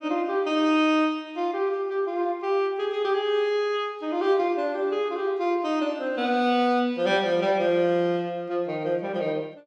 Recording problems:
none

